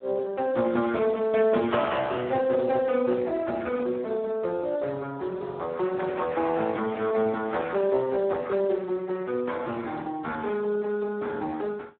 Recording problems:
telephone audio; 170 Hz to 2 kHz, Speex

